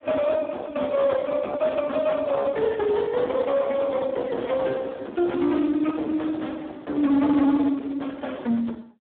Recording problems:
phone line; 190 Hz to 2.1 kHz, Speex
distorted audio; hard clipping, signal-to-distortion ratio 9 dB

